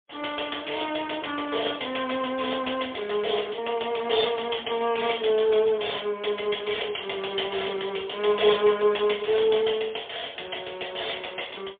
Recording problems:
phone line; 300 Hz to 3.5 kHz, AMR-NB, then MP3

